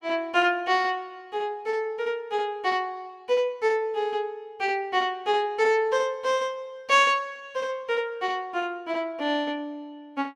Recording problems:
none

